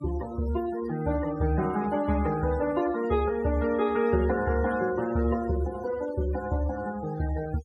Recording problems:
noise reduction artefacts; signal-to-artefact ratio 15 dB

